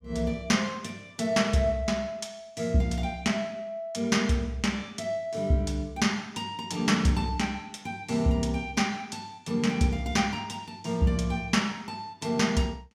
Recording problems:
none

